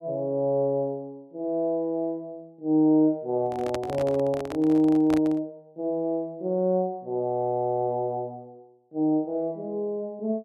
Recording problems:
microphone handling noise; from 3.5 to 5.5 s; peak -3 dB vs average level

